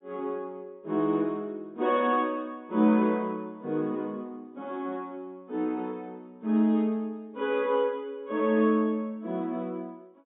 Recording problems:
treble missing; nothing above 4 kHz

